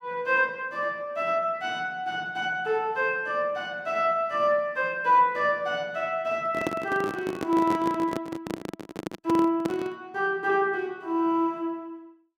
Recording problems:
microphone handling noise; from 6.5 to 10 s; peak +2 dB vs average level

